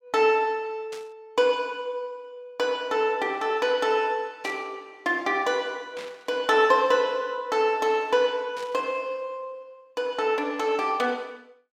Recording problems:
static burst; 4 times, first at 1 s; peak -11 dB vs average level

